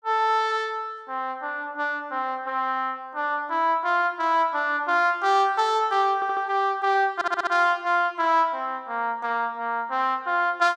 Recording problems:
audio stuttering; at 6 s and at 7 s

